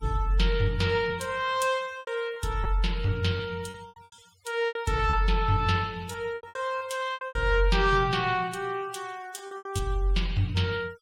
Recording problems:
denoising artefacts; signal-to-artefact ratio 23 dB
packet loss; 9% of the sound replaced, filled with repeated pitch periods

